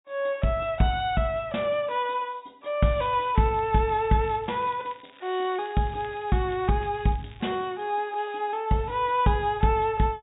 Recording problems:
treble missing; nothing above 4 kHz
crackle; from 3 to 4.5 s and from 4.5 to 7.5 s; loose cable, SNR 26 dB

